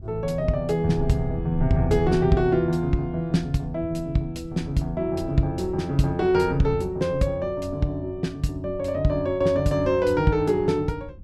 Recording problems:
wind on the microphone; below 120 Hz, SNR 13 dB

